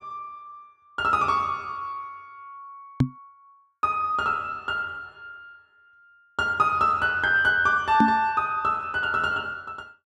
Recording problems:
knock on the microphone; at 3 s and at 8 s; peak +7 dB vs average level

